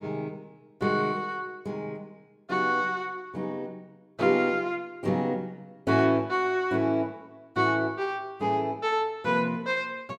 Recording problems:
none

